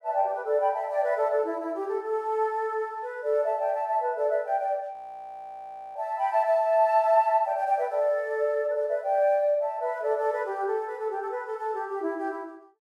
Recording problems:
audio freezing; at 5 s for 1 s

